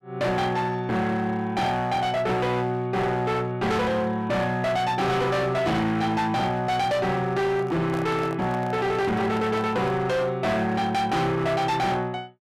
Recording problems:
distortion; hard clipping, signal-to-distortion ratio 8 dB
handling noise; from 7.5 to 10 s; peak -7 dB vs average level

